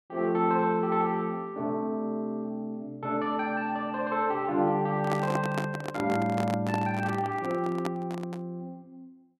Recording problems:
handling noise; from 5 to 8.5 s; peak +2 dB vs average level

